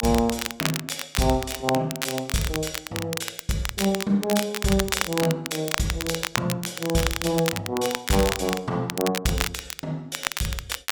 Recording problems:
crackle; vinyl, SNR 4 dB

